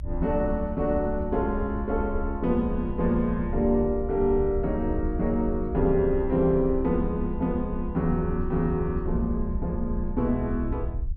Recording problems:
low-frequency rumble; below 70 Hz, strongest tone 24 Hz, SNR 8 dB

